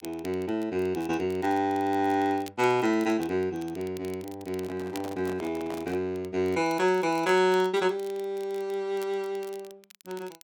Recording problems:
crackling; vinyl, SNR 23 dB
handling noise; from 4.5 to 6 s; peak -8 dB vs average level

